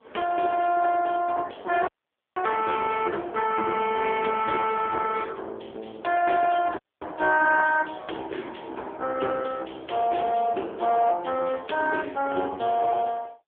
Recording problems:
telephone audio; 300 Hz to 3.3 kHz, AMR-NB
audio cutting out; at 2 s and at 7 s

